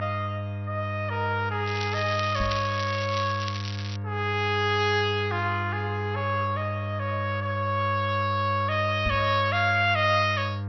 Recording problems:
codec artefacts; MP2, log-spectral distance 4 dB, nothing above 5 kHz
hum; 50 Hz, harmonics up to 1.2 kHz, SNR 6 dB
crackling; from 1.5 to 4 s; loose cable, SNR 11 dB
microphone thump; at 2.5 s and at 9 s; peak -1 dB vs average level

